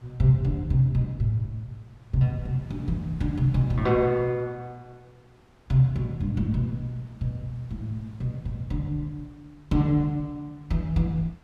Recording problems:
wind on the microphone; below 1.1 kHz, SNR 29 dB

